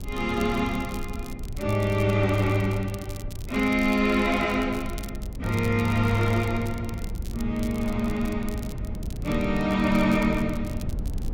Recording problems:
low-frequency rumble; below 120 Hz, SNR 10 dB
crackle; vinyl, SNR 21 dB

